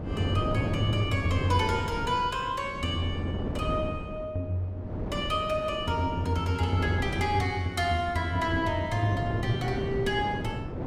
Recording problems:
wind noise; below 380 Hz, SNR 6 dB

